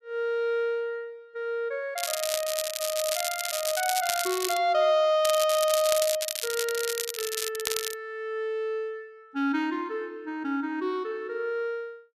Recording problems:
crackling; from 2 to 4.5 s and from 5 to 8 s; loose cable, SNR 2 dB

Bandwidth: 14 kHz